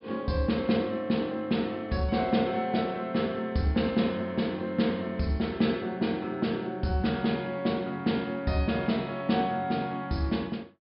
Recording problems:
treble cut off; nothing above 5.2 kHz

